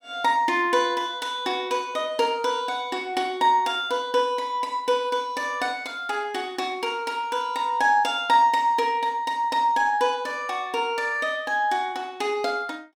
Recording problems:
none

